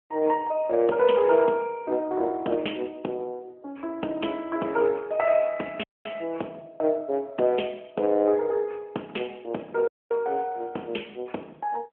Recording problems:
phone line; 260 Hz to 3.3 kHz, AMR-NB
dropout; at 6 s and at 10 s

